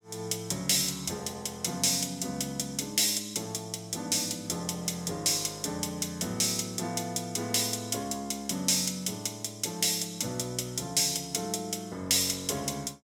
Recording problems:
none

